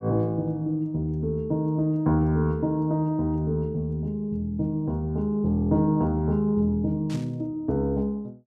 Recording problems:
static burst; at 7 s; peak -13 dB vs average level

